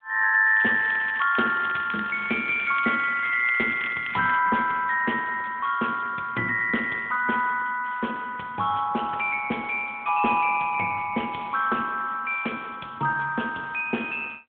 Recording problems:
telephone audio; 150 Hz to 3.4 kHz, AMR-NB
crackle; from 0.5 to 4.5 s; loose cable, SNR 15 dB

